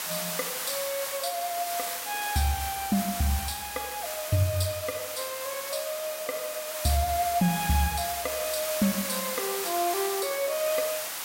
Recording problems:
background hiss; SNR 3 dB

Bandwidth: 16 kHz